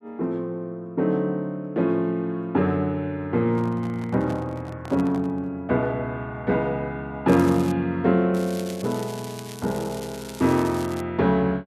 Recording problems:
handling noise; from 3.5 to 5.5 s; peak -9 dB vs average level
crackle; at 7.5 s and from 8.5 to 11 s; loose cable, SNR 17 dB

